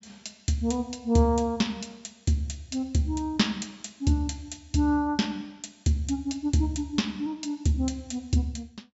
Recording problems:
treble cut off; nothing above 8 kHz

